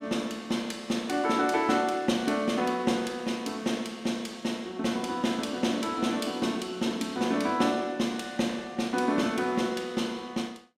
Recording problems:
none

